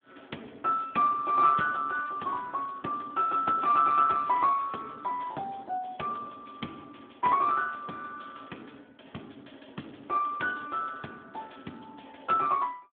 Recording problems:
phone line; 190 Hz to 3.4 kHz, Speex

